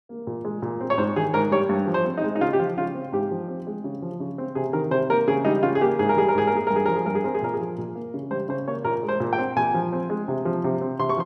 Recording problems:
none

